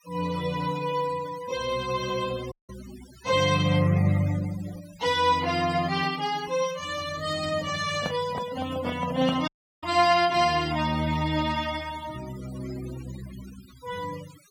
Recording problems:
denoising artefacts; signal-to-artefact ratio 16 dB
audio cutting out; at 2.5 s and at 9.5 s
microphone handling noise; from 8 to 9.5 s; peak 0 dB vs average level

